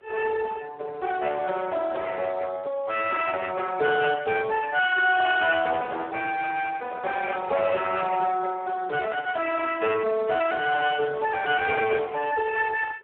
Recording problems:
telephone audio; 340 Hz to 2.6 kHz, Speex
distortion; hard clipping, uneven, signal-to-distortion ratio 13 dB
wind noise; below 1.4 kHz, SNR 23 dB

